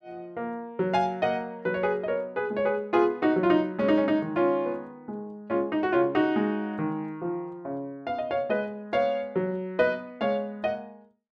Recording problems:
none

